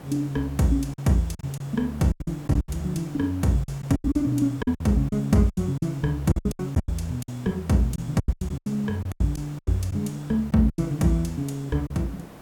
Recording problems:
hiss; slope -7 dB per octave, SNR 19 dB
packet loss; 13% of the sound replaced, filled with silence

